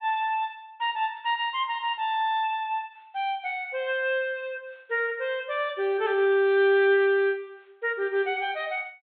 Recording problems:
treble missing; nothing above 4 kHz

